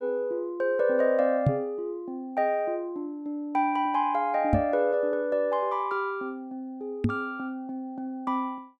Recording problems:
microphone bump; at 1.5 s, at 4.5 s and at 7 s; peak +8 dB vs average level

